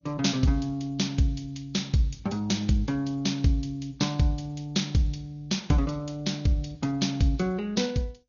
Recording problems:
codec artefacts; MP2, then Vorbis, log-spectral distance 4 dB, nothing above 6.7 kHz

